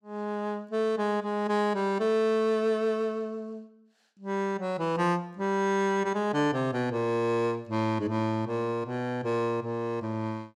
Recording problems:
none

